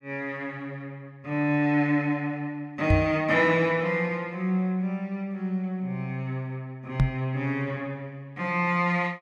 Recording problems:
knock on the microphone; at 3 s and at 7 s; peak +7 dB vs average level

